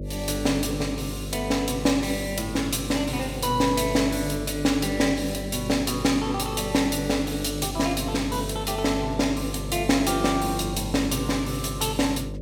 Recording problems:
electrical hum; 50 Hz, harmonics up to 600 Hz, SNR 9 dB

